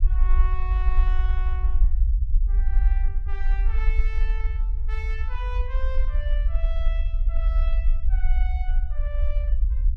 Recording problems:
low-frequency rumble; below 50 Hz, SNR -14 dB

